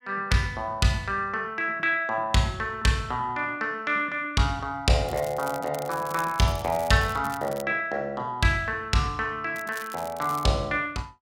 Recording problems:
crackling; from 5 to 7.5 s and at 9.5 s; loose cable, SNR 17 dB

